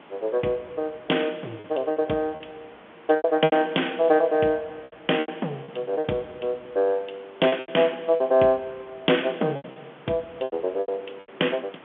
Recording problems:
phone line; 190 Hz to 3.5 kHz, G.711
hiss; SNR 23 dB
packet loss; 9% of the sound replaced, filled with repeated pitch periods

